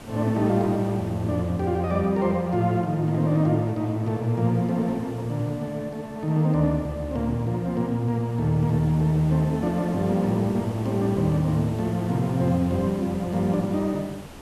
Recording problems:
hiss; slope -5 dB per octave, SNR 19 dB

